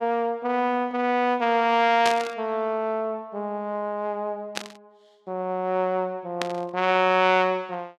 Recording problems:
static burst; at 2 s, at 4.5 s and at 6.5 s; peak +1 dB vs average level

